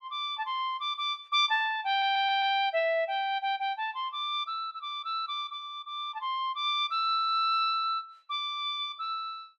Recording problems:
stutter; at 2 s

